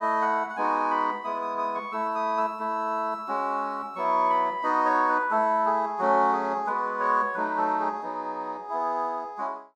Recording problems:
none

